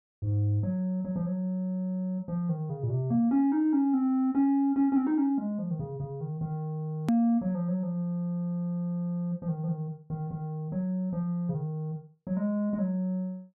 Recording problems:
hard cut with a click; at 7 s

